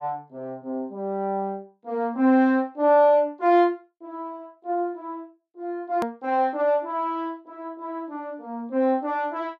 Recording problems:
edit click; at 6 s

